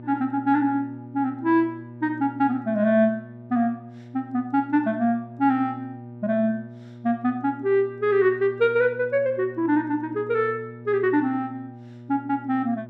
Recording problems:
hum; 60 Hz, harmonics up to 960 Hz, SNR 17 dB

